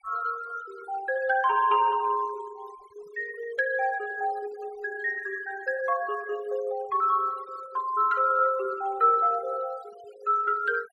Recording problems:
denoising artefacts; signal-to-artefact ratio 22 dB

